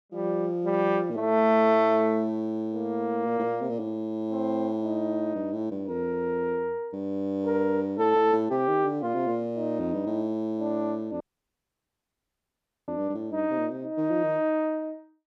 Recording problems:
audio cutting out; at 11 s for 1.5 s

